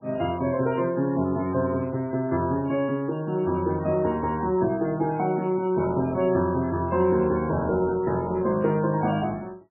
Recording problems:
lossy compression; MP3, log-spectral distance 2 dB, nothing above 2.4 kHz

